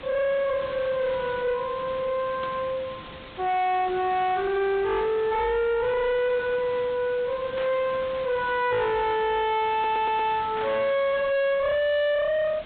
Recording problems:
treble cut off; nothing above 4 kHz
lossy compression; MP3, log-spectral distance 6 dB
distorted audio; soft clipping, signal-to-distortion ratio 6 dB
background hiss; SNR 15 dB
burst of static; at 2.5 s, at 7.5 s and at 11 s; peak -10 dB vs average level
stutter; at 9.5 s

